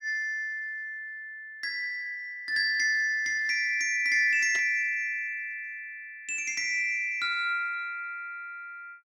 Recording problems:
burst of static; at 4.5 s; peak -8 dB vs average level

